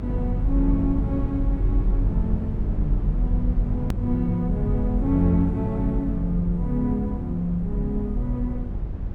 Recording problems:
hum; 50 Hz, harmonics up to 550 Hz, SNR 8 dB
low-frequency rumble; below 56 Hz, strongest tone 40 Hz, SNR 2 dB
edit click; at 4 s

